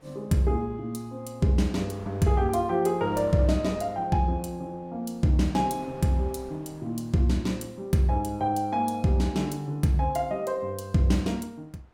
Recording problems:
wind noise; below 1 kHz, SNR 25 dB

